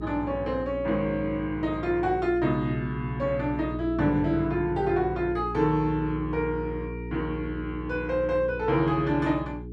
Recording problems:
hum; 60 Hz, harmonics up to 420 Hz, SNR 10 dB

